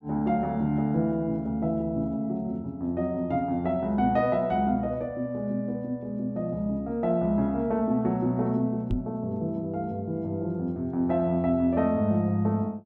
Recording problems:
microphone bump; at 9 s; peak +1 dB vs average level

